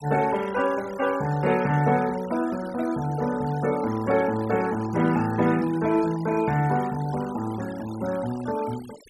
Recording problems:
denoising artefacts; signal-to-artefact ratio 18 dB

